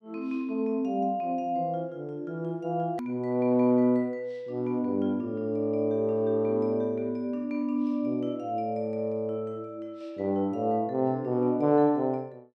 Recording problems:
edit click; at 3 s

